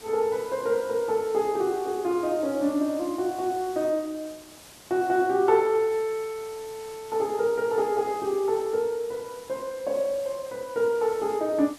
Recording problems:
background hiss; slope -2 dB per octave, SNR 20 dB

